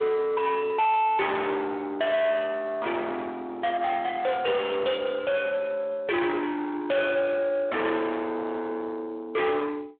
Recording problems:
telephone audio; 340 Hz to 3.6 kHz, Speex
distorted audio; soft clipping, signal-to-distortion ratio 6 dB

